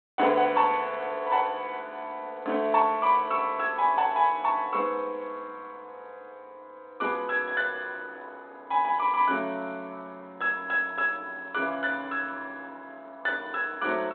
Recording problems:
telephone audio; 240 Hz to 3.5 kHz, G.726

